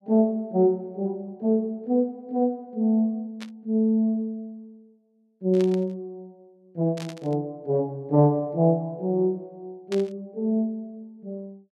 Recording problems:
burst of static; 4 times, first at 3.5 s; peak -9 dB vs average level

